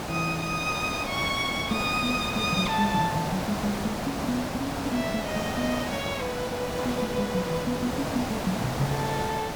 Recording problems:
background hiss; SNR 3 dB

